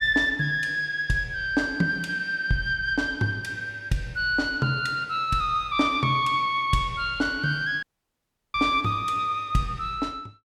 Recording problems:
audio cutting out; at 8 s for 0.5 s

